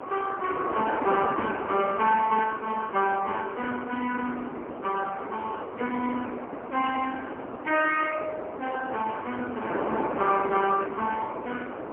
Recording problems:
phone line; 220 Hz to 2.8 kHz, AMR-NB, then MP3
wind on the microphone; below 990 Hz, SNR 6 dB

